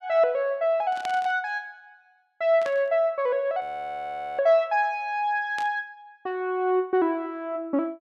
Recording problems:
static burst; at 1 s, at 2.5 s and at 5.5 s; peak -8 dB vs average level
audio freezing; at 3.5 s for 1 s

